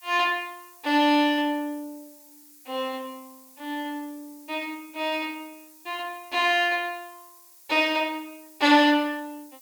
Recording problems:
background hiss; slope +4 dB per octave, SNR 24 dB

